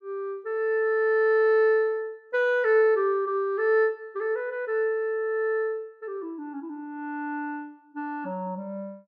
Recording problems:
none

